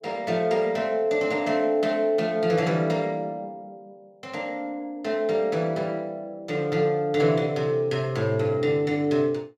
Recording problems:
none

